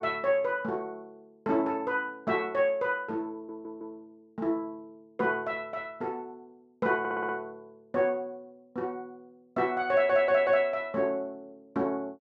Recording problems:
stutter; at 3.5 s, at 7 s and at 10 s

